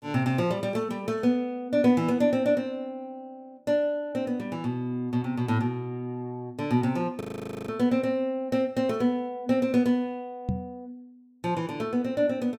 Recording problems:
audio freezing; at 7 s
knock on the microphone; at 10 s; peak +3 dB vs average level

